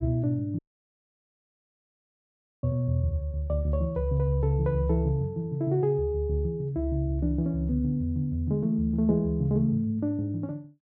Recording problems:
audio cutting out; at 0.5 s for 2 s

